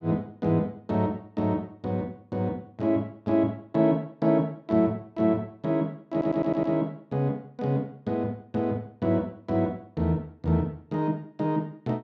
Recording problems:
audio stuttering; at 6 s

